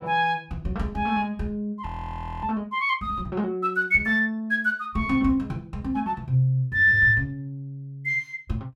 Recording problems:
frozen audio; at 2 s for 0.5 s

